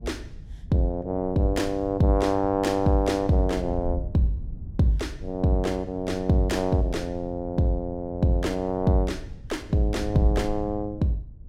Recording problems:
wind on the microphone; below 92 Hz, SNR 13 dB

